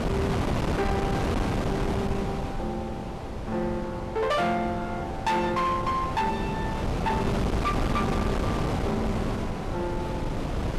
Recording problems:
distorted audio; hard clipping, signal-to-distortion ratio 11 dB
wind noise; below 620 Hz, SNR 0 dB

